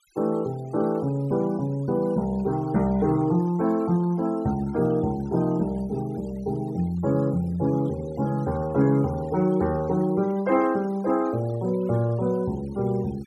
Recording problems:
noise reduction artefacts; signal-to-artefact ratio 24 dB

